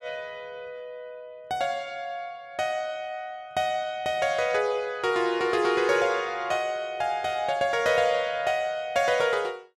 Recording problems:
none

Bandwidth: 13.5 kHz